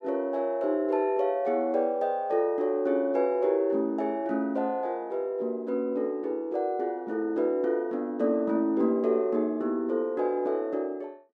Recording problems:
none

